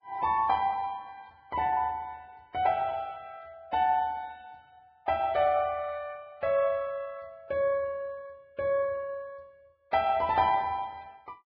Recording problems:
lossy codec; Vorbis, log-spectral distance 2 dB

